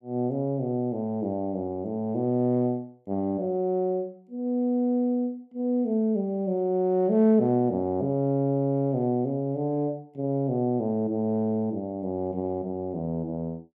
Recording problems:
none

